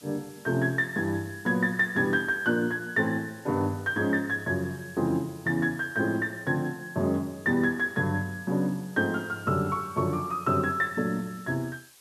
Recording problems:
background hiss; slope +1 dB per octave, SNR 24 dB

